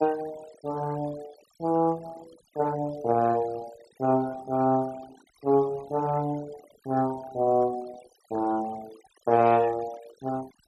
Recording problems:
noise reduction artefacts; signal-to-artefact ratio 21 dB

